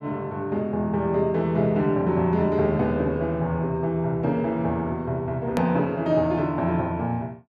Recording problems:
edit click; at 5.5 s

